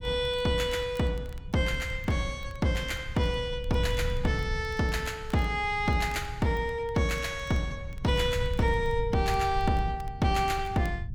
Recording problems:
rumble; below 100 Hz, SNR 10 dB
crackling; vinyl, SNR 29 dB

